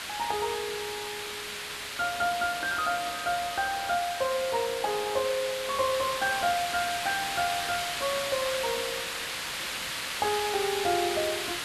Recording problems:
hiss; SNR 3 dB

